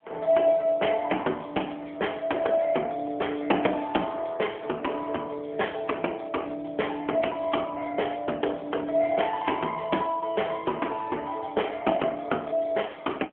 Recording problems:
phone line; 260 Hz to 3.3 kHz, AMR-NB

